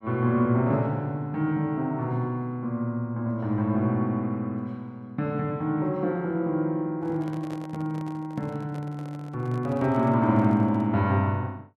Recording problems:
microphone handling noise; from 7 to 11 s; peak -10 dB vs average level

